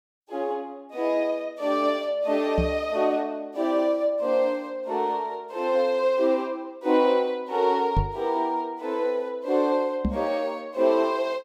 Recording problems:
microphone bump; at 2.5 s, at 8 s and at 10 s; peak +4 dB vs average level

